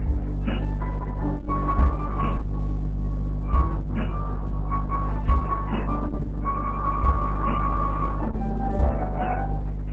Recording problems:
codec artefacts; MP3, then Opus, log-spectral distance 3 dB, nothing above 7.6 kHz
hum; 50 Hz, harmonics up to 300 Hz, SNR 1 dB
background hiss; SNR 18 dB

